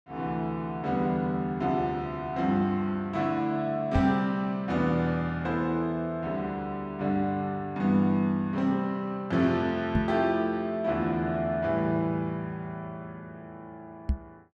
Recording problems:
knock on the microphone; at 4 s, at 10 s and at 14 s; peak +5 dB vs average level

